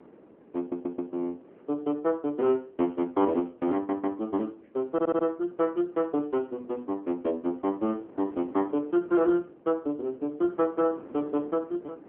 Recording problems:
phone line; 220 Hz to 3.1 kHz, AMR-NB
wind on the microphone; below 520 Hz, SNR 22 dB
audio stuttering; at 0.5 s, at 3.5 s and at 5 s

